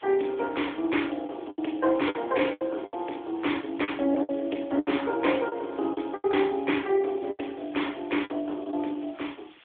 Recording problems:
telephone audio; 240 Hz to 3.5 kHz, AMR-NB
hiss; SNR 25 dB
lost packets; 9% of the sound replaced, filled with the last packet

